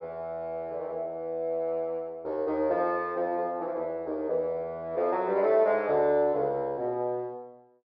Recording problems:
low-pass filter; nothing above 5.5 kHz

